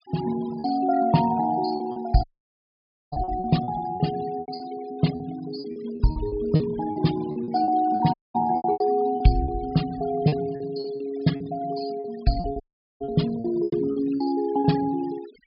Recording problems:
low-pass filter; nothing above 5.5 kHz
denoising artefacts; signal-to-artefact ratio 17 dB
packet loss; 13% of the sound replaced, filled with repeated pitch periods
audio cutting out; at 2 s for 1 s, at 8 s and at 13 s

